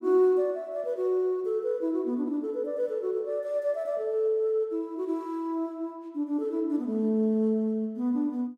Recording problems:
none

